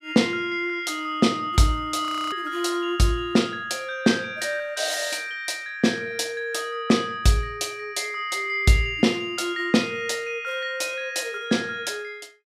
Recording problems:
audio freezing; at 2 s

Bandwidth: 15.5 kHz